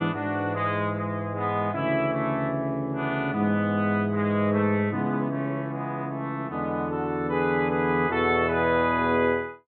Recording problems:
treble missing; nothing above 4 kHz

